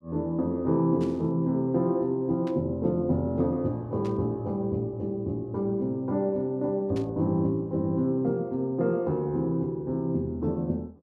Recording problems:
static burst; 4 times, first at 1 s; peak -14 dB vs average level

